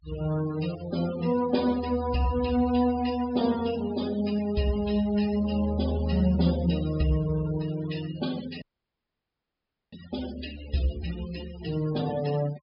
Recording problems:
treble cut off; nothing above 5.5 kHz
denoising artefacts; signal-to-artefact ratio 14 dB
audio cutting out; at 8.5 s for 1.5 s

